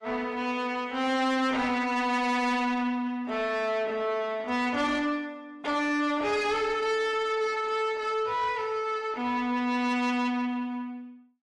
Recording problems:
codec artefacts; AAC, log-spectral distance 2 dB, nothing above 11 kHz
distortion; soft clipping, signal-to-distortion ratio 10 dB

